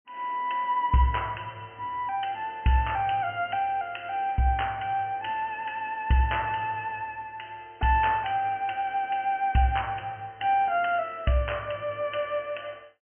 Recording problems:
treble missing; nothing above 3.1 kHz

